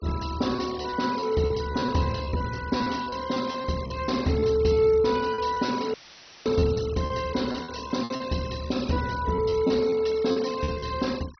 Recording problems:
low-pass filter; nothing above 6.1 kHz
denoising artefacts; signal-to-artefact ratio 17 dB
packet loss; 10% of the sound replaced, filled with repeated pitch periods
audio cutting out; at 6 s for 0.5 s; filled with static

